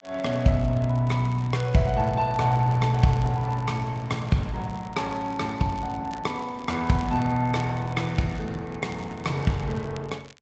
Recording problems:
treble cut off; nothing above 8 kHz
lossy compression; Opus, log-spectral distance 3 dB
crackle; vinyl, SNR 25 dB

